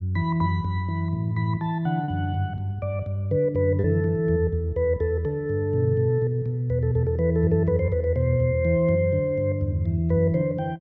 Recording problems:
packet loss; 0.7% of the sound replaced, filled with repeated pitch periods

